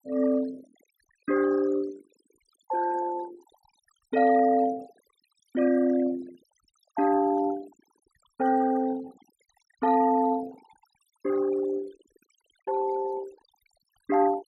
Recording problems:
denoising artefacts; signal-to-artefact ratio 18 dB

